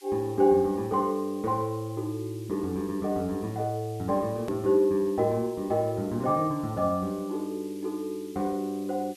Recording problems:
background hiss; SNR 24 dB
hard cut with a click; at 4.5 s

